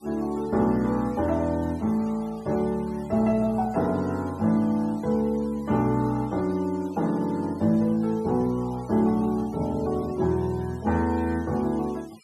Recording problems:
noise reduction artefacts; signal-to-artefact ratio 24 dB

